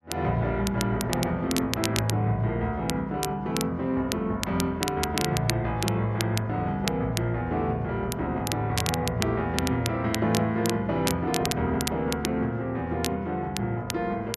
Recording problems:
crackling; vinyl, SNR 7 dB

